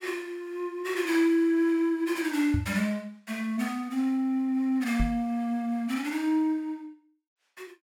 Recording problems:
microphone bump; at 2.5 s and at 5 s; peak +2 dB vs average level

